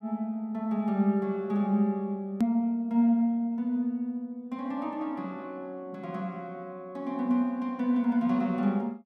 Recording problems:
click at an edit; at 2.5 s

